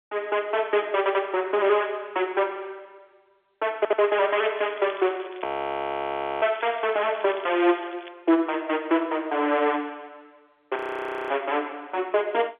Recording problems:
telephone audio; 280 Hz to 3.5 kHz, G.711
stutter; at 1 s and at 4 s
crackling; from 4.5 to 8 s; loose cable, SNR 21 dB
audio freezing; at 5.5 s for 1 s and at 11 s for 0.5 s

